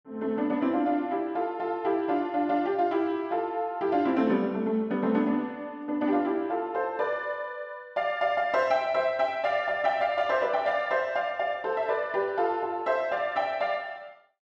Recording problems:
none

